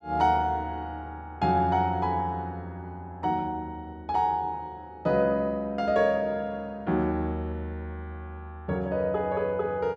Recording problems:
none

